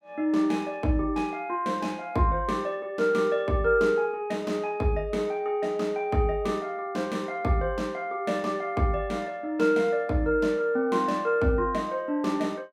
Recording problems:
none

